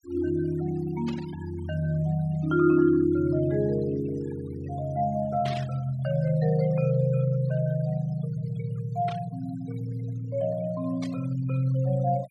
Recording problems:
noise reduction artefacts; signal-to-artefact ratio 21 dB
static burst; 4 times, first at 1 s; peak -9 dB vs average level

